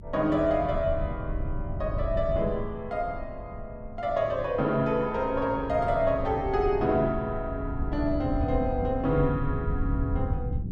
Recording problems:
low-frequency rumble; below 110 Hz, SNR 7 dB

